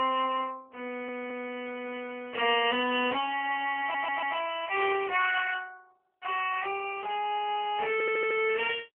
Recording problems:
telephone audio; 300 Hz to 3.1 kHz, AMR-NB
stutter; at 1 s, at 4 s and at 8 s

